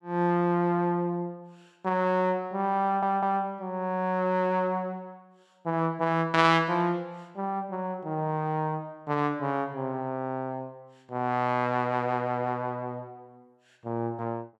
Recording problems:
audio stuttering; at 3 s

